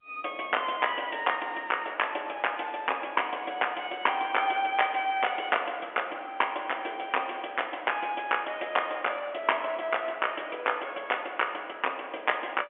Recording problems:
phone line; 240 Hz to 3.2 kHz, G.711

